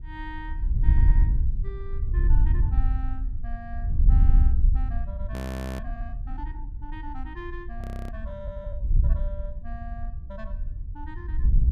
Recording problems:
wind on the microphone; below 66 Hz, SNR -15 dB
frozen audio; at 5.5 s and at 8 s

